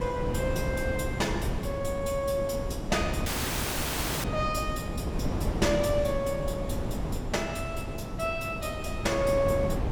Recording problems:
wind on the microphone; below 330 Hz, SNR 3 dB
audio cutting out; at 3.5 s for 1 s

